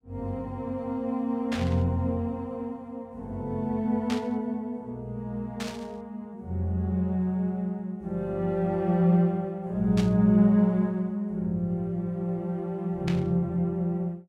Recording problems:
static burst; 5 times, first at 1.5 s; peak -4 dB vs average level

